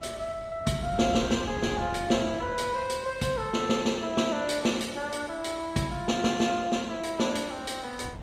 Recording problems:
codec artefacts; Opus, log-spectral distance 4 dB, nothing above 15.5 kHz
wind on the microphone; below 270 Hz, SNR 16 dB

